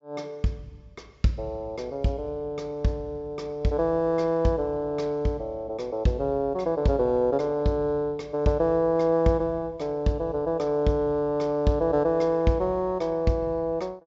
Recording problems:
treble cut off; nothing above 8 kHz

